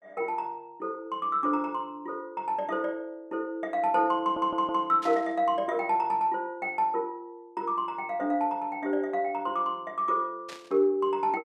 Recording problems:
audio stuttering; at 4 s
static burst; at 5 s and at 10 s; peak -10 dB vs average level

